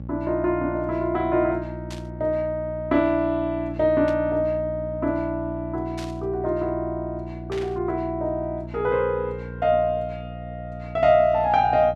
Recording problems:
hum; 60 Hz, harmonics up to 600 Hz, SNR 12 dB
burst of static; 4 times, first at 2 s; peak -10 dB vs average level

